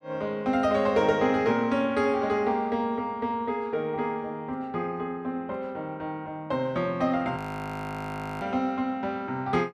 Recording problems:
audio freezing; at 7.5 s for 1 s

